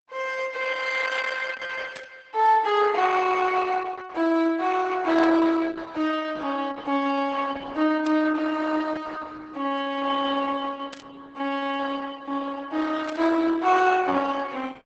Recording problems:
lossy compression; Opus, log-spectral distance 4 dB, nothing above 7.3 kHz
static burst; 5 times, first at 2 s; peak -10 dB vs average level

